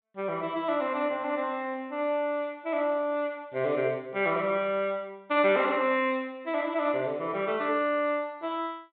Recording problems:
low-pass filter; nothing above 4 kHz

